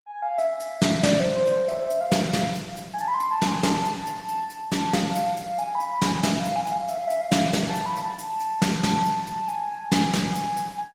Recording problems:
codec artefacts; Opus, log-spectral distance 4 dB, nothing above 19 kHz

